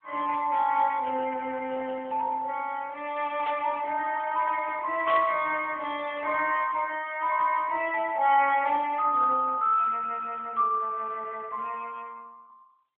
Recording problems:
phone line; 340 Hz to 3.4 kHz, AMR-NB
static burst; at 3.5 s and at 5 s; peak -6 dB vs average level

